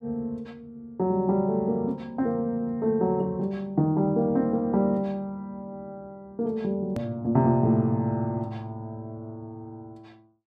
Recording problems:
edit click; at 7 s

